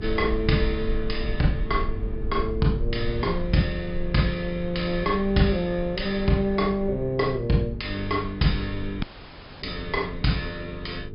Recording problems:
treble cut off; nothing above 5.5 kHz
hum; 50 Hz, harmonics up to 450 Hz, SNR 14 dB
rumble; below 58 Hz, SNR 10 dB
audio cutting out; at 9 s for 0.5 s

